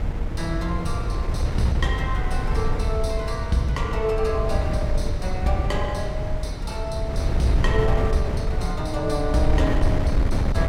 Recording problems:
wind noise; below 110 Hz, SNR -1 dB

